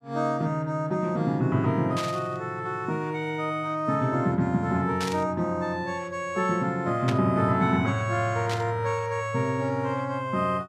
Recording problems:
static burst; 4 times, first at 2 s; peak -2 dB vs average level

